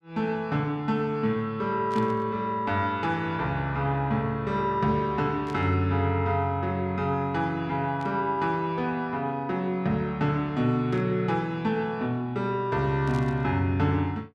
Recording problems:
burst of static; 5 times, first at 2 s; peak -13 dB vs average level

